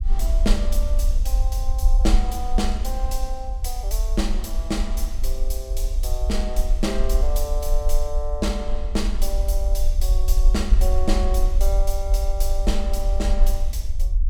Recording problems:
rumble; below 46 Hz, SNR -5 dB

